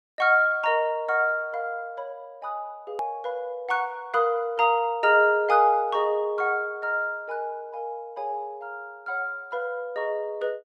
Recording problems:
edit click; at 3 s

